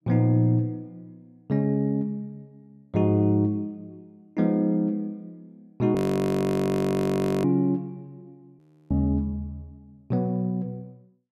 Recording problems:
frozen audio; at 6 s for 1.5 s and at 8.5 s

